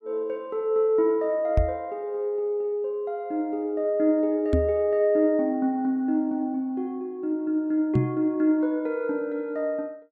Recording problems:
knock on the microphone; at 1.5 s, at 4.5 s and at 8 s; peak +6 dB vs average level

